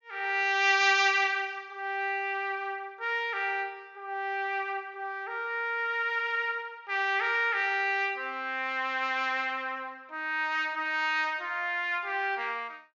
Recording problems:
low-pass filter; nothing above 6.9 kHz

